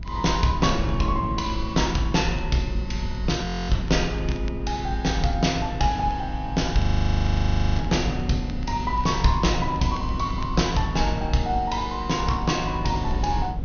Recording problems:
treble missing; nothing above 6.4 kHz
rumble; below 68 Hz, strongest tone 54 Hz, SNR 6 dB
wind on the microphone; below 180 Hz, SNR 10 dB
crackle; vinyl, SNR 26 dB
audio freezing; at 3.5 s and at 7 s for 1 s

